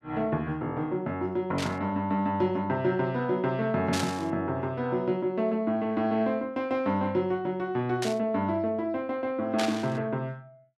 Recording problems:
static burst; 4 times, first at 1.5 s; peak +1 dB vs average level

